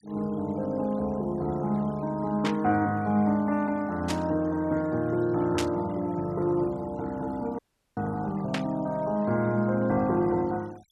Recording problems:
denoising artefacts; signal-to-artefact ratio 26 dB
burst of static; 4 times, first at 2.5 s; peak +1 dB vs average level
audio cutting out; at 7.5 s

